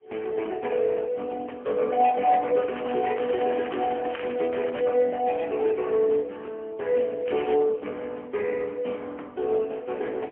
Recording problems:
phone line; 260 Hz to 3.3 kHz, AMR-NB, then MP3
crackling; from 2.5 to 5 s and at 7.5 s; loose cable, SNR 17 dB

